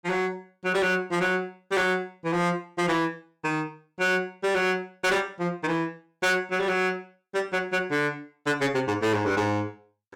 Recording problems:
distorted audio; hard clipping, signal-to-distortion ratio 10 dB

